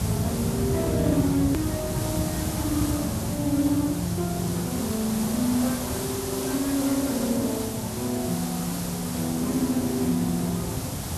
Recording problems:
codec artefacts; Speex, log-spectral distance 2 dB, nothing above 13.1 kHz
electrical hum; 50 Hz, harmonics up to 650 Hz, SNR 21 dB
background hiss; SNR 6 dB
rumble; below 180 Hz, SNR 6 dB
hard cut with a click; at 1.5 s

